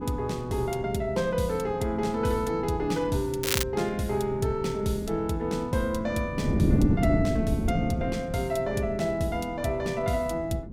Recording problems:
wind on the microphone; below 260 Hz, SNR 5 dB
crackle; at 3.5 s; loose cable, SNR 1 dB

